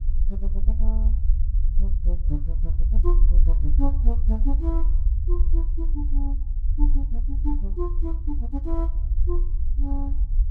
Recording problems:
low-frequency rumble; below 52 Hz, SNR -11 dB

